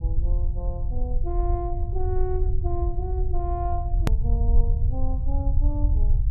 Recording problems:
low-frequency rumble; below 68 Hz, SNR -8 dB
click at an edit; at 4 s

